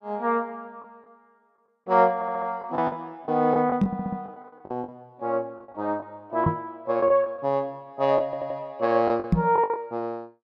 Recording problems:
lost packets; 9% of the sound replaced, filled with the last packet
audio stuttering; at 2 s, at 4 s and at 8.5 s
microphone thump; at 4 s, at 6.5 s and at 9.5 s; peak +9 dB vs average level

